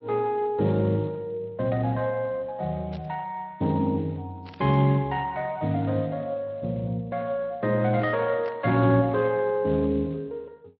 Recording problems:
lossy compression; MP3, then Speex, log-spectral distance 2 dB
static burst; at 3 s, at 4.5 s and at 8.5 s; peak -16 dB vs average level

